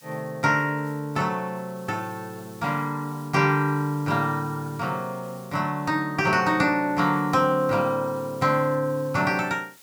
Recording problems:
background hiss; slope +1 dB per octave, SNR 25 dB

